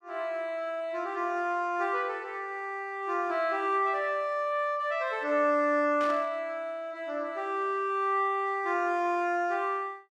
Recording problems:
static burst; at 6 s; peak -9 dB vs average level

